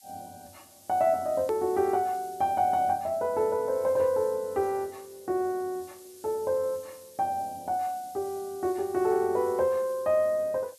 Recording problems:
background hiss; SNR 22 dB
click at an edit; at 1.5 s

